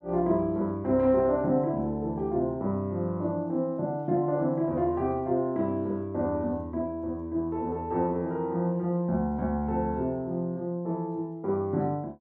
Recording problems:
none

